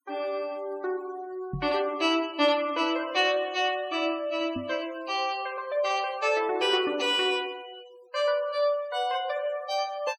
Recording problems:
denoising artefacts; signal-to-artefact ratio 22 dB
microphone thump; at 1.5 s and at 4.5 s; peak -3 dB vs average level

